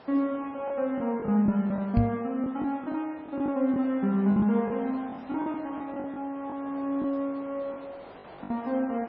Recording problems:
codec artefacts; MP3, log-spectral distance 2 dB
background hiss; SNR 19 dB
packet loss; 8% of the sound replaced, filled with the last packet
knock on the microphone; at 2 s; peak +8 dB vs average level

